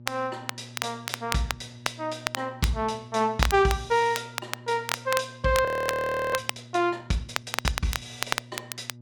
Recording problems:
hum; 60 Hz, harmonics up to 600 Hz, SNR 19 dB
crackle; vinyl, SNR 6 dB
audio freezing; at 5.5 s for 0.5 s

